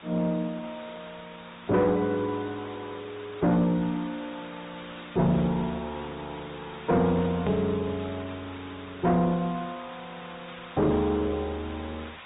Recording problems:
low-pass filter; nothing above 3.8 kHz
codec artefacts; Opus, log-spectral distance 6 dB
distorted audio; soft clipping, signal-to-distortion ratio 10 dB
background hiss; SNR 16 dB
edit click; at 7.5 s

